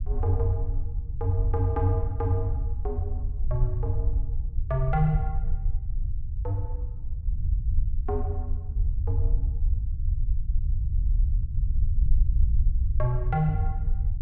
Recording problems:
low-frequency rumble; below 66 Hz, SNR -1 dB

